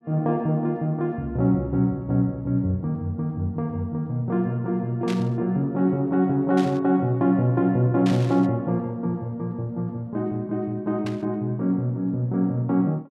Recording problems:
burst of static; 4 times, first at 5 s; peak -7 dB vs average level

